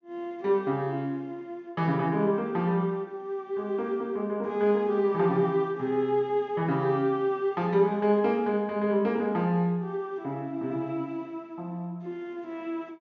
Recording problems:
treble cut off; nothing above 7 kHz

